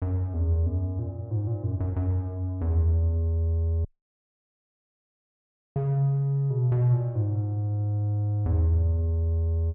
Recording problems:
dropout; at 4 s for 2 s

